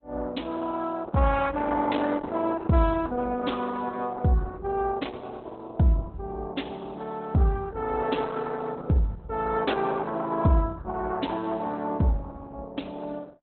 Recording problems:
lossy compression; Opus, log-spectral distance 3 dB, nothing above 4 kHz

